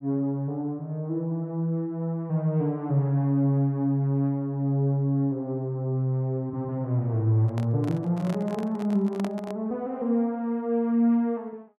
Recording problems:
handling noise; from 7.5 to 9.5 s; peak -5 dB vs average level

